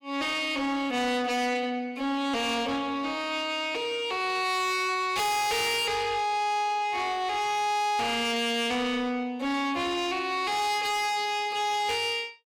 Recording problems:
distorted audio; soft clipping, signal-to-distortion ratio 6 dB

